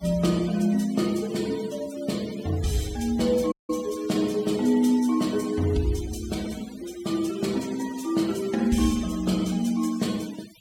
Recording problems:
denoising artefacts; signal-to-artefact ratio 17 dB
audio cutting out; at 3.5 s

